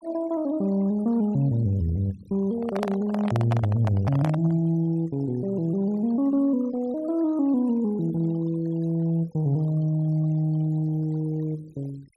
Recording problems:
noise reduction artefacts; signal-to-artefact ratio 24 dB
microphone handling noise; from 2.5 to 4.5 s; peak -1 dB vs average level

